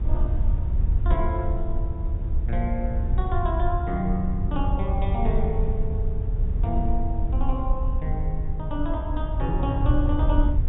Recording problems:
low-pass filter; nothing above 4 kHz
low-frequency rumble; below 74 Hz, SNR -3 dB

